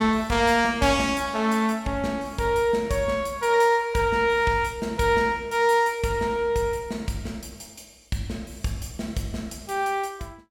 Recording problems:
none

